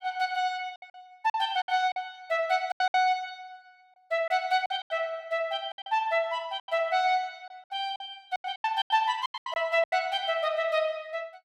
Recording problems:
packet loss; 12% of the sound replaced, filled with silence

